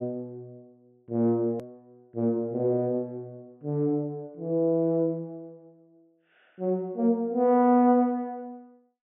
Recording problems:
treble cut off; nothing above 3.4 kHz
click at an edit; at 1.5 s

